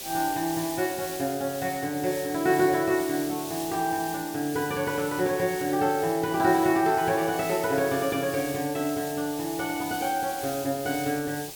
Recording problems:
hiss; SNR 11 dB

